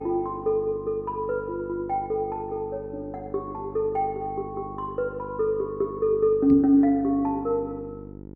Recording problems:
electrical hum; 50 Hz, harmonics up to 950 Hz, SNR 15 dB
microphone bump; at 6.5 s; peak -3 dB vs average level

